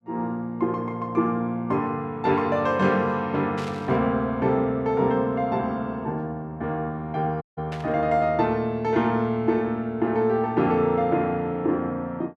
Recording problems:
burst of static; at 3.5 s and at 7.5 s; peak -10 dB vs average level
dropout; at 7.5 s

